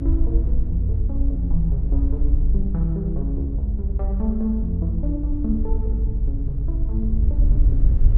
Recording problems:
rumble; below 54 Hz, SNR -5 dB

